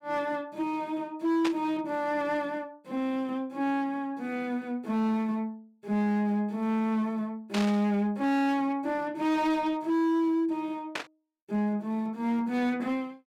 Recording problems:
distorted audio; hard clipping, signal-to-distortion ratio 10 dB
burst of static; at 1.5 s, at 7.5 s and at 11 s; peak 0 dB vs average level

